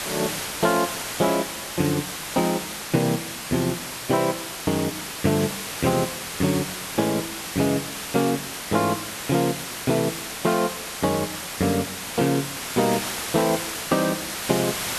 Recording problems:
background hiss; slope -1 dB per octave, SNR 5 dB

